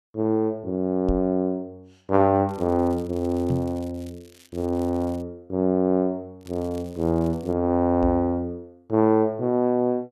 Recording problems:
microphone thump; at 1 s, at 3.5 s and at 8 s; peak 0 dB vs average level
crackling; from 2.5 to 5 s and from 6.5 to 7.5 s; loose cable, SNR 28 dB

